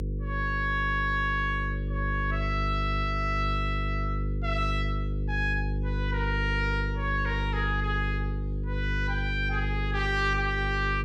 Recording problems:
electrical hum; 50 Hz, harmonics up to 500 Hz, SNR 1 dB

